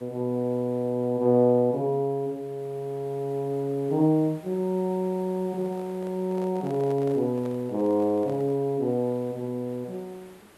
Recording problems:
background hiss; slope -5 dB per octave, SNR 26 dB
handling noise; from 5.5 to 8.5 s; peak -12 dB vs average level

